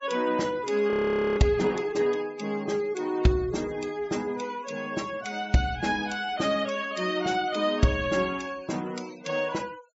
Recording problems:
treble missing; nothing above 8 kHz
noise reduction artefacts; signal-to-artefact ratio 20 dB
audio freezing; at 1 s

